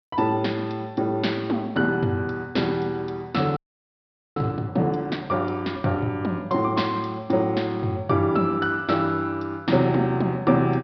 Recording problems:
treble missing; nothing above 5.5 kHz
frozen audio; at 3.5 s for 1 s

